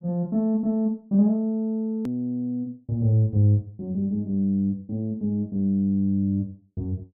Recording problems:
hard cut with a click; at 2 s

